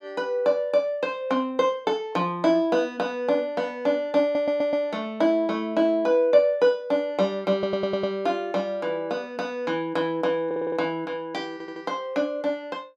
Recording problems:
audio stuttering; 4 times, first at 4 s

